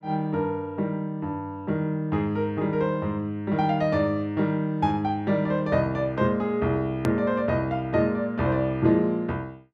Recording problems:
click at an edit; at 7 s

